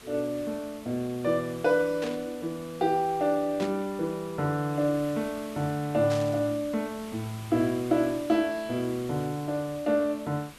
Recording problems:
hiss; SNR 18 dB
static burst; at 2 s, at 3.5 s and at 6 s; peak -7 dB vs average level

